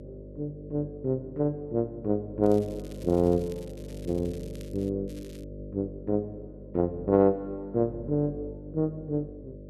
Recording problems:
hum; 50 Hz, harmonics up to 600 Hz, SNR 13 dB
crackle; from 2.5 to 5 s and at 5 s; loose cable, SNR 24 dB

